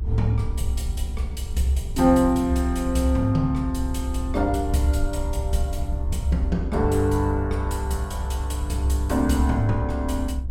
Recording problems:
rumble; below 68 Hz, strongest tone 66 Hz, SNR 4 dB

